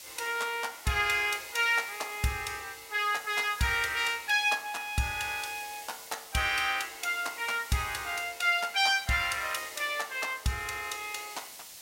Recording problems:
hiss; SNR 16 dB

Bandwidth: 16 kHz